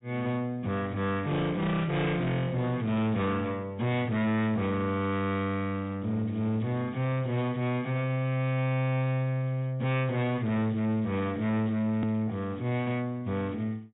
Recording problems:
low-pass filter; nothing above 4 kHz
distorted audio; soft clipping, signal-to-distortion ratio 6 dB
click at an edit; at 12 s

